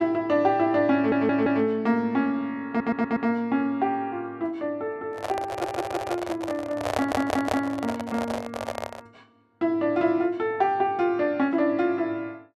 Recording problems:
stutter; 4 times, first at 1 s
microphone handling noise; from 5 to 9 s; peak +3 dB vs average level

